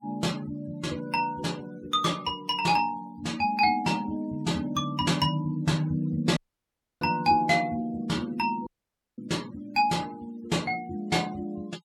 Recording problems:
denoising artefacts; signal-to-artefact ratio 22 dB
audio cutting out; at 6.5 s for 0.5 s and at 8.5 s for 0.5 s

